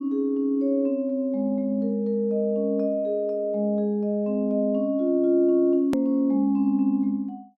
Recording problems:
edit click; at 6 s

